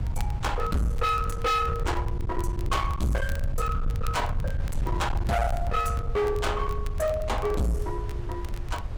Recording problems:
distortion; hard clipping, signal-to-distortion ratio 7 dB
low-frequency rumble; below 100 Hz, SNR 3 dB
wind noise; below 1 kHz, SNR 19 dB
crackling; vinyl, SNR 23 dB

